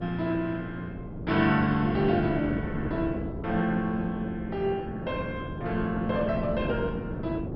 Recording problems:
lossy compression; MP2, log-spectral distance 2 dB, nothing above 4.9 kHz
wind on the microphone; below 370 Hz, SNR 7 dB

